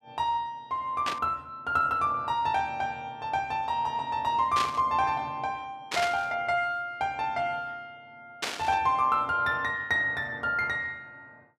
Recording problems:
static burst; 4 times, first at 1 s; peak +2 dB vs average level

